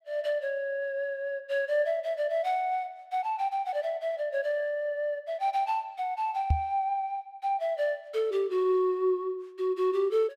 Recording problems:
microphone thump; at 6.5 s; peak +7 dB vs average level

